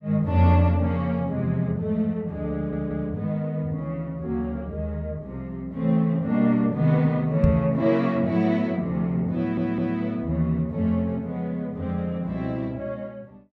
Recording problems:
stutter; at 2.5 s and at 9.5 s
microphone bump; at 7.5 s; peak +6 dB vs average level

